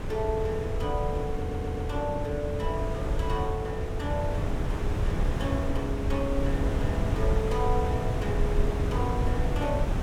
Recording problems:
wind noise; below 150 Hz, SNR -2 dB
stutter; at 1.5 s

